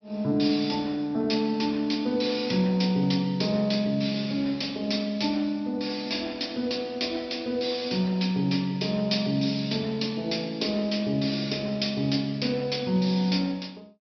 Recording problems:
treble cut off; nothing above 5.7 kHz

